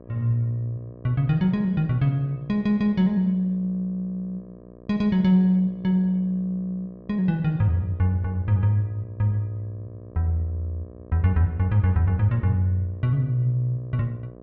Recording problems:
hum; 60 Hz, harmonics up to 1.2 kHz, SNR 21 dB

